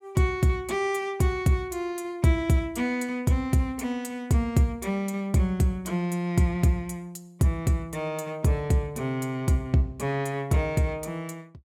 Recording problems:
none

